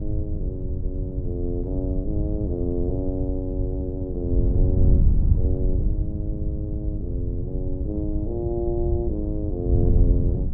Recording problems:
wind on the microphone; below 100 Hz, SNR -5 dB

